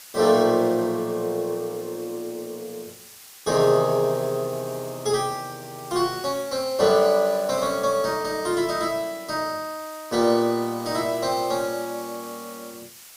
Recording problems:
background hiss; slope +2 dB per octave, SNR 18 dB

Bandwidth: 15.5 kHz